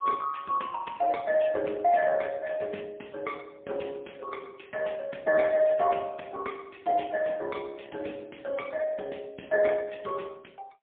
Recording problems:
telephone audio; 240 Hz to 3 kHz, AMR-NB, then MP3

